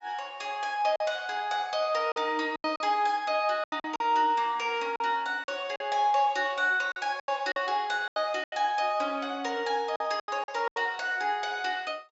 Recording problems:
low-pass filter; nothing above 8 kHz
packet loss; 9% of the sound replaced, filled with silence

